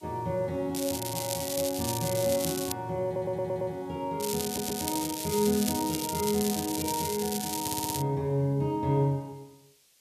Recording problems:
hiss; SNR 30 dB
crackling; from 1 to 2.5 s and from 4 to 8 s; loose cable, SNR 4 dB
stutter; at 3 s, at 4.5 s and at 7.5 s

